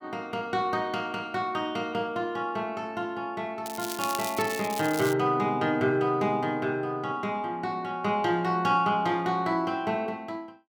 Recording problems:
crackle; from 3.5 to 5 s; loose cable, SNR 9 dB

